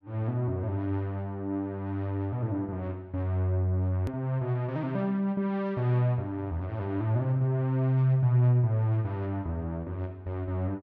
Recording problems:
edit click; at 4 s

